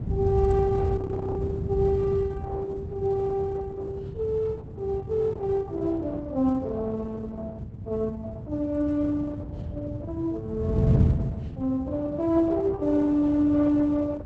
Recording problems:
codec artefacts; Opus, log-spectral distance 2 dB, nothing above 7.3 kHz
wind on the microphone; below 140 Hz, SNR 3 dB
frozen audio; at 1 s

